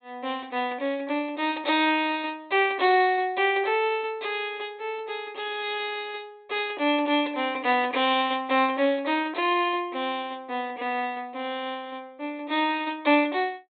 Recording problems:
low-pass filter; nothing above 4 kHz

